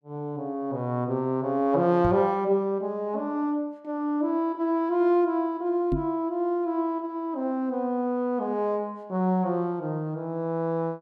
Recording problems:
microphone thump; at 2 s and at 6 s; peak +2 dB vs average level

